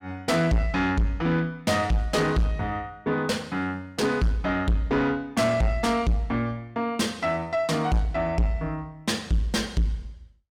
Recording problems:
distortion; soft clipping, signal-to-distortion ratio 7 dB

